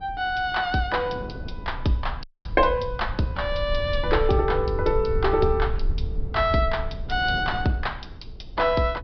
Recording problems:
low-pass filter; nothing above 5.5 kHz
rumble; below 70 Hz, SNR 8 dB
wind noise; below 350 Hz, SNR 19 dB
audio cutting out; at 2 s

